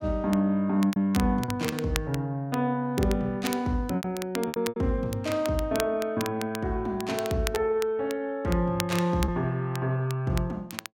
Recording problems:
crackling; vinyl, SNR 12 dB
packet loss; 4% of the sound replaced, filled with repeated pitch periods

